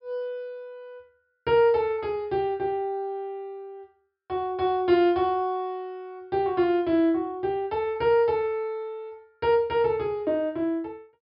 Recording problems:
treble cut off; nothing above 5.5 kHz

